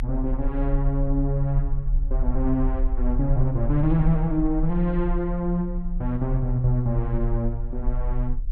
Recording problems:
low-frequency rumble; below 38 Hz, strongest tone 34 Hz, SNR 4 dB

